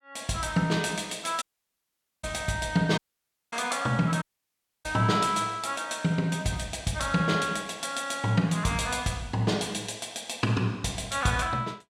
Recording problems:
dropout; at 1.5 s for 1 s, at 3 s for 0.5 s and at 4 s for 0.5 s

